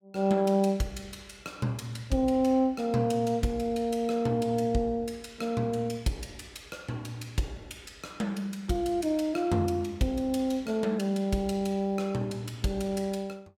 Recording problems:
none

